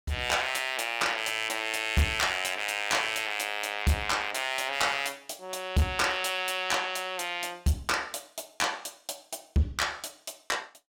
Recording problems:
distorted audio; hard clipping, uneven, signal-to-distortion ratio 11 dB

